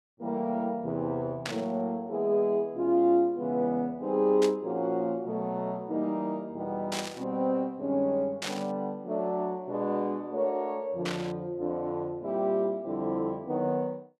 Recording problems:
static burst; 5 times, first at 1.5 s; peak -1 dB vs average level

